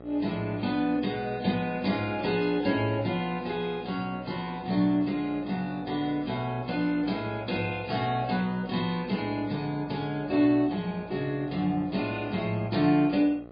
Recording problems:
lossy codec; MP3, log-spectral distance 3 dB, nothing above 4.5 kHz
electrical hum; 60 Hz, harmonics up to 1.4 kHz, SNR 19 dB

